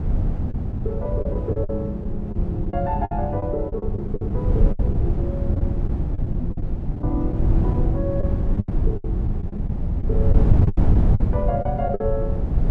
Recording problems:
wind on the microphone; below 110 Hz, SNR -5 dB
lost packets; 11% of the sound replaced, filled with the last packet

